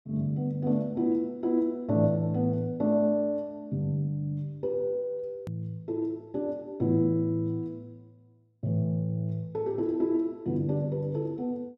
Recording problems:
click at an edit; at 5.5 s

